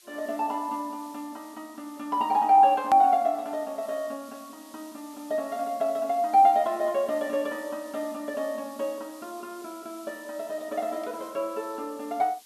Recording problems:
hiss; slope +3 dB per octave, SNR 24 dB
hard cut with a click; at 3 s

